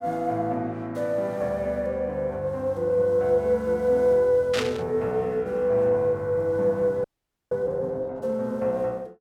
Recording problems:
burst of static; at 4.5 s; peak +1 dB vs average level
audio freezing; at 7 s

